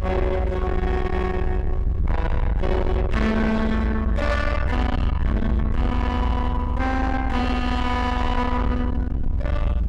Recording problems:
distorted audio; soft clipping, signal-to-distortion ratio 8 dB
rumble; below 100 Hz, SNR 0 dB
wind noise; below 300 Hz, SNR 16 dB

